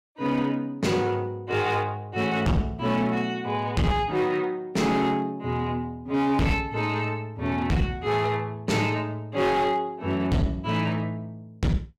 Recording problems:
distortion; hard clipping, signal-to-distortion ratio 7 dB

